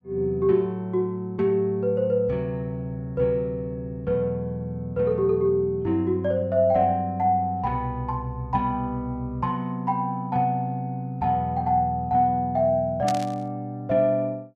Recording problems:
burst of static; at 13 s; peak -3 dB vs average level

